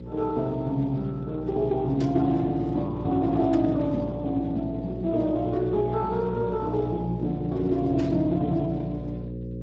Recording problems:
lossy codec; Speex, log-spectral distance 2 dB
hum; 60 Hz, harmonics up to 540 Hz, SNR 9 dB
static burst; at 2 s, at 3.5 s and at 8 s; peak -11 dB vs average level

